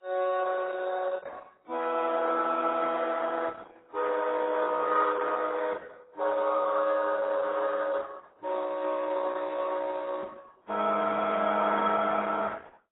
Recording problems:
lossy compression; Opus, then AAC, log-spectral distance 5 dB, nothing above 3.7 kHz

